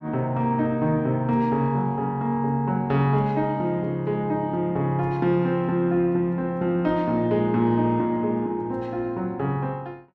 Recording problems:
none

